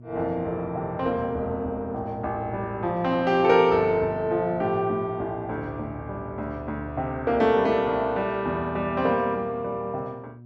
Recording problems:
hum; 60 Hz, harmonics up to 600 Hz, SNR 20 dB

